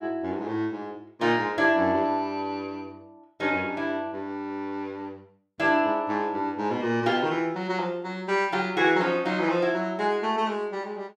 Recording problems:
none

